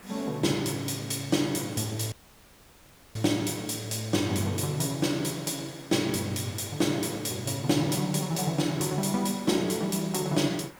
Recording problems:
background hiss; SNR 22 dB
audio cutting out; at 2 s for 1 s

